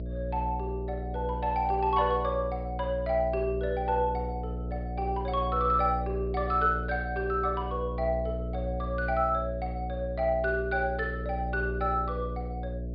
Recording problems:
treble cut off; nothing above 5 kHz
hum; 60 Hz, harmonics up to 660 Hz, SNR 6 dB

